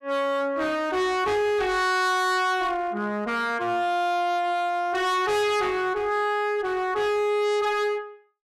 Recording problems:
distorted audio; hard clipping, uneven, signal-to-distortion ratio 6 dB

